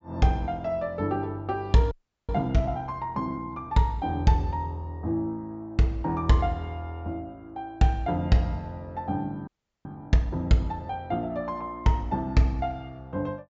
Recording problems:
treble cut off; nothing above 8 kHz
frozen audio; at 2 s and at 9.5 s

